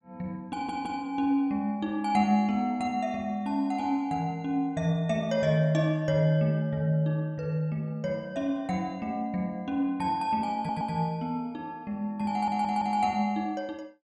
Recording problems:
stutter; at 0.5 s, at 11 s and at 12 s

